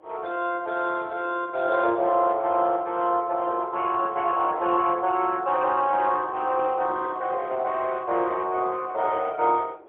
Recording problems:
phone line; 300 Hz to 3.6 kHz, AMR-NB, then MP3
wind noise; below 650 Hz, SNR 21 dB

